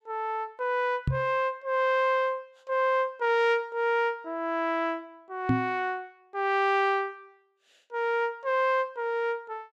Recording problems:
microphone thump; at 1 s and at 5.5 s; peak +6 dB vs average level

